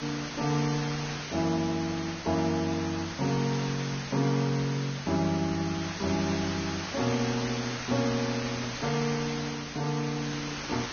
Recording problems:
lossy codec; Vorbis, log-spectral distance 14 dB
background hiss; slope -1 dB per octave, SNR 6 dB

